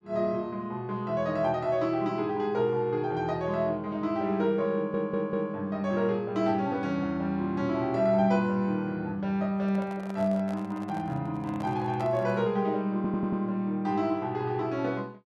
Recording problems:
audio stuttering; at 5 s and at 13 s
handling noise; from 9.5 to 13 s; peak -9 dB vs average level

